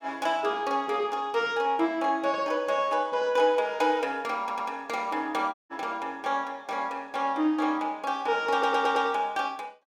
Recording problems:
stutter; at 4.5 s and at 8.5 s
audio cutting out; at 5.5 s

